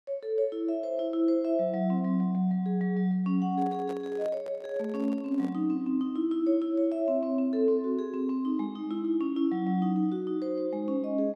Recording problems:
handling noise; from 3.5 to 5.5 s; peak -10 dB vs average level

